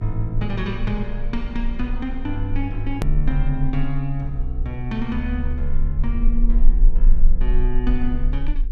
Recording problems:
hum; 50 Hz, harmonics up to 450 Hz, SNR 16 dB
low-frequency rumble; below 32 Hz, strongest tone 18 Hz, SNR -1 dB
click at an edit; at 3 s

